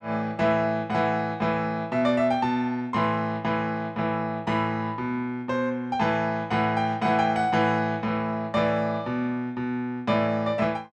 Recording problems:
none

